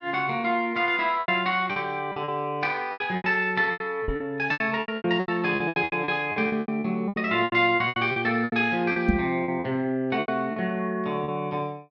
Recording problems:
packet loss; 17% of the sound replaced, filled with repeated pitch periods
microphone bump; at 4 s and at 9 s; peak +7 dB vs average level

